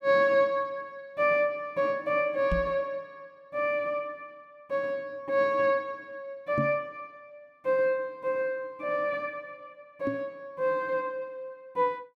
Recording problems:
microphone bump; at 2.5 s, at 6.5 s and at 10 s; peak +2 dB vs average level

